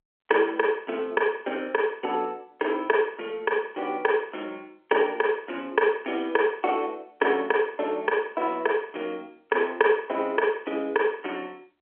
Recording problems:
phone line; 260 Hz to 3.3 kHz, G.711

